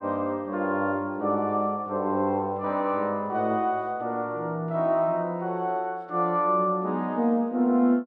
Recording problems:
none

